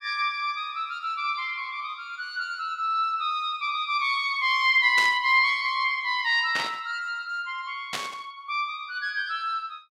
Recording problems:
burst of static; at 5 s, at 6.5 s and at 8 s; peak 0 dB vs average level

